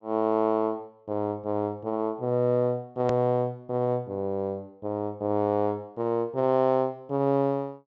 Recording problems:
treble missing; nothing above 8 kHz
hard cut with a click; at 3 s

